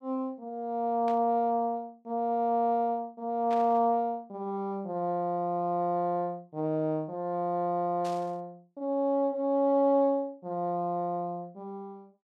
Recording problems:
static burst; at 1 s, at 3.5 s and at 8 s; peak -12 dB vs average level

